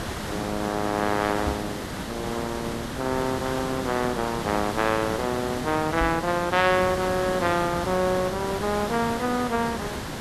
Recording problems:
background hiss; slope -5 dB per octave, SNR 6 dB
microphone thump; at 1.5 s and at 6 s; peak -1 dB vs average level

